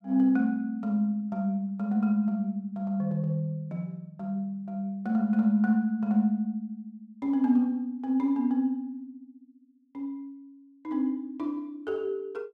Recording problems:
none

